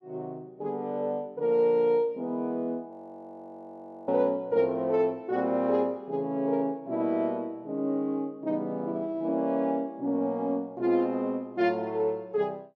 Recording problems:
audio freezing; at 3 s for 1 s

